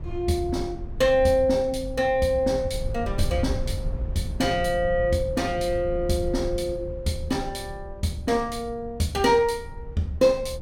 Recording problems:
rumble; below 96 Hz, SNR 10 dB

